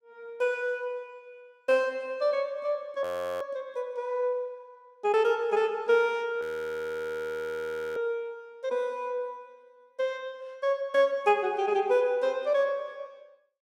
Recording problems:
audio freezing; at 3 s and at 6.5 s for 1.5 s

